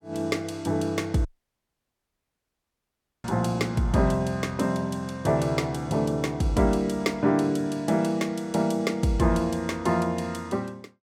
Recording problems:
audio cutting out; at 1.5 s for 2 s

